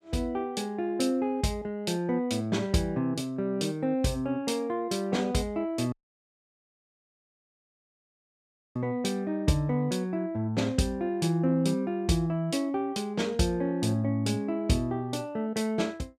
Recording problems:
audio cutting out; at 6 s for 3 s

